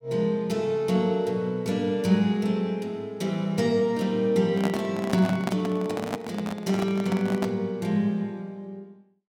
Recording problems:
handling noise; from 4.5 to 7.5 s; peak +1 dB vs average level

